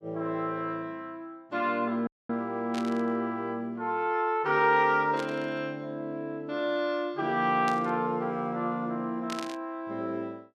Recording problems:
dropout; at 2 s
burst of static; 4 times, first at 2.5 s; peak -4 dB vs average level

